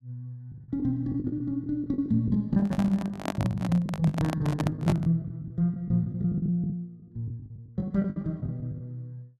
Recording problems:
lost packets; 18% of the sound replaced, filled with the last packet
handling noise; from 2.5 to 5 s; peak +1 dB vs average level

